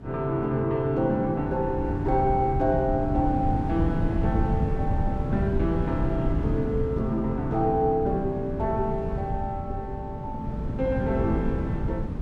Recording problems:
wind noise; below 180 Hz, SNR 3 dB

